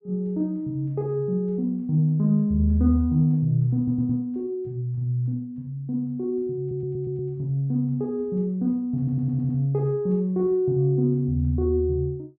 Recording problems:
stutter; at 4 s, at 6.5 s and at 9 s

